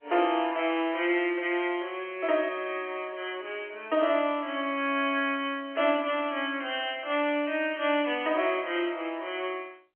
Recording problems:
phone line; 280 Hz to 3.2 kHz, G.711

